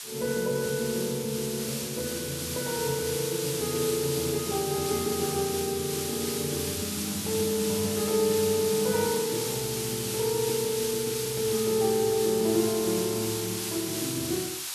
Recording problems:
hiss; slope +4 dB per octave, SNR 3 dB

